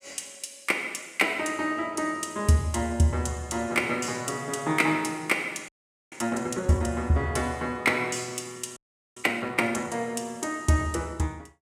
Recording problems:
frozen audio; at 5.5 s and at 9 s

